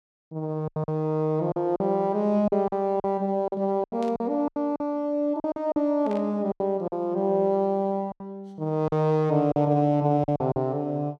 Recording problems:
lost packets; 10% of the sound replaced, filled with silence
burst of static; at 4 s and at 6 s; peak -15 dB vs average level

